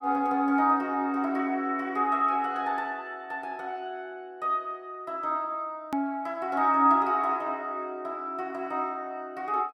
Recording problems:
edit click; at 6 s

